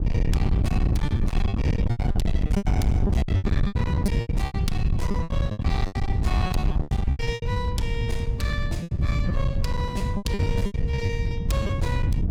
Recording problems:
distorted audio; hard clipping, signal-to-distortion ratio 13 dB
wind noise; below 140 Hz, SNR -7 dB
packet loss; 17% of the sound replaced, filled with repeated pitch periods

